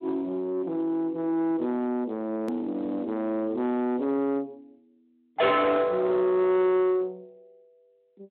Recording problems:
telephone audio; 800 Hz to 2.2 kHz, Speex
distortion; soft clipping, signal-to-distortion ratio 7 dB
hard cut with a click; at 2.5 s

